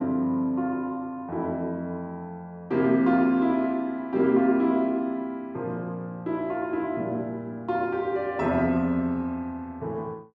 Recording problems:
none

